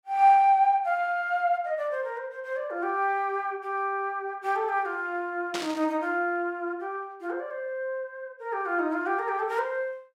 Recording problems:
static burst; at 5.5 s; peak -2 dB vs average level

